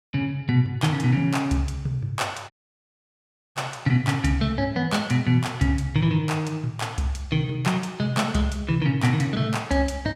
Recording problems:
dropout; at 2.5 s for 1 s

